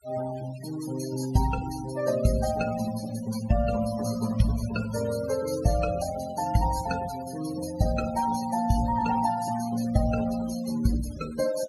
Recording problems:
denoising artefacts; signal-to-artefact ratio 12 dB

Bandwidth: 15 kHz